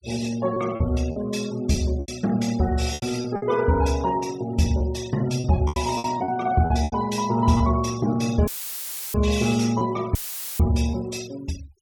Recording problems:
denoising artefacts; signal-to-artefact ratio 18 dB
lost packets; 8% of the sound replaced, filled with repeated pitch periods
audio cutting out; at 8.5 s for 0.5 s and at 10 s; filled with static

